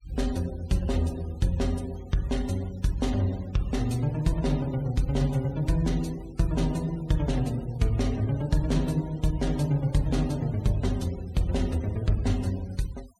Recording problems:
denoising artefacts; signal-to-artefact ratio 22 dB

